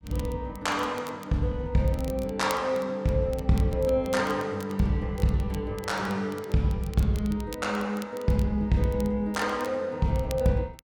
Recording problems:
crackle; vinyl, SNR 21 dB

